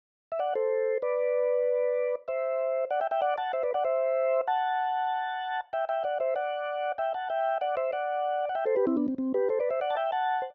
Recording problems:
none

